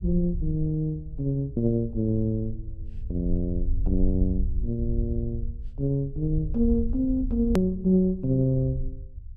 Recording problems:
rumble; below 66 Hz, SNR 7 dB
edit click; at 7.5 s

